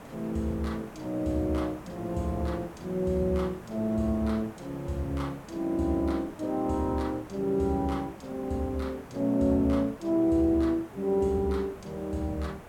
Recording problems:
background hiss; SNR 16 dB

